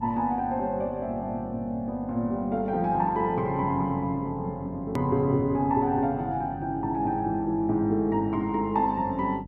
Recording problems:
electrical hum; 50 Hz, harmonics up to 600 Hz, SNR 16 dB
hard cut with a click; at 5 s

